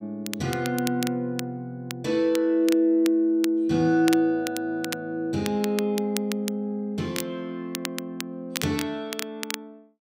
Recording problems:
crackling; vinyl, SNR 11 dB

